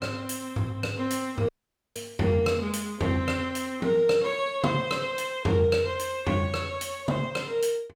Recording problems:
dropout; at 1.5 s

